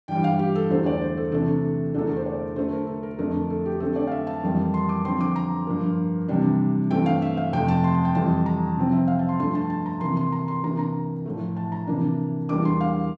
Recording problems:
none

